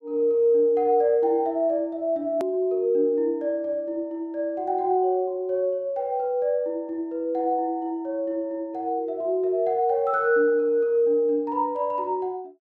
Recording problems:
hard cut with a click; at 2.5 s

